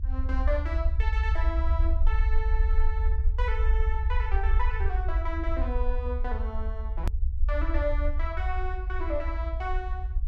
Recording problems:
rumble; below 60 Hz, SNR -6 dB
edit click; at 7 s

